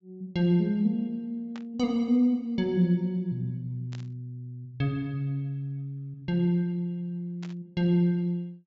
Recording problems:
low-pass filter; nothing above 8 kHz
static burst; at 1.5 s, at 4 s and at 7.5 s; peak -14 dB vs average level

